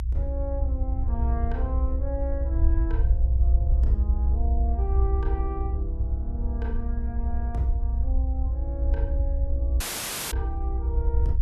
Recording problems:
low-frequency rumble; below 64 Hz, strongest tone 60 Hz, SNR -10 dB
dropout; at 10 s for 0.5 s

